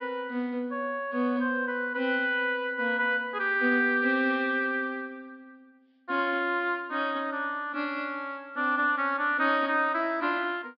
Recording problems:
treble missing; nothing above 5.5 kHz

